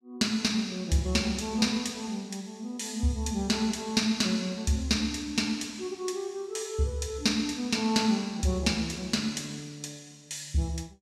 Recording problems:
none

